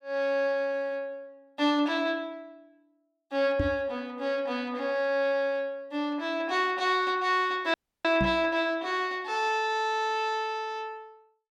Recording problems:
knock on the microphone; at 3.5 s and at 8 s; peak +2 dB vs average level
audio cutting out; at 7.5 s

